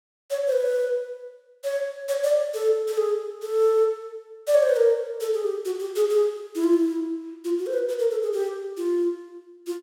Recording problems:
none

